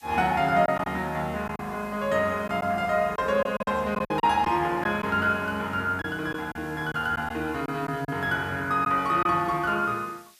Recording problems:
hiss; SNR 26 dB
lost packets; 5% of the sound replaced, filled with silence

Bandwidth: 14.5 kHz